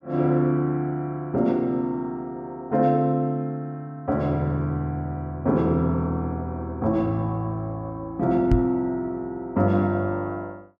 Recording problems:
microphone bump; at 8.5 s; peak +7 dB vs average level

